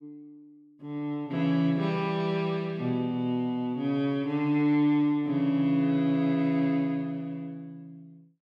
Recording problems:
none

